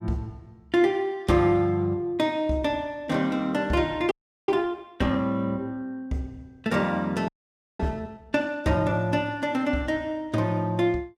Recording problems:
frozen audio; at 4 s and at 7.5 s for 0.5 s

